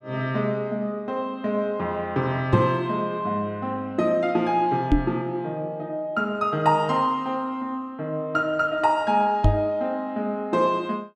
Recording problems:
knock on the microphone; at 2.5 s, at 5 s and at 9.5 s; peak +9 dB vs average level

